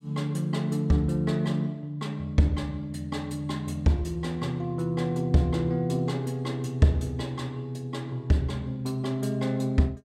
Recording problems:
none

